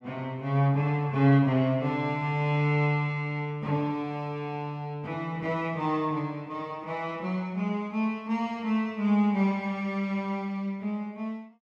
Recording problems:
none

